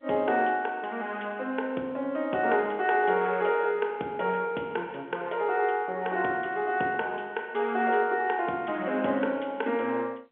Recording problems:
phone line; 280 Hz to 3.7 kHz, G.711

